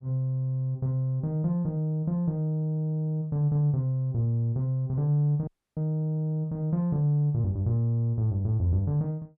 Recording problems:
dropout; at 5.5 s

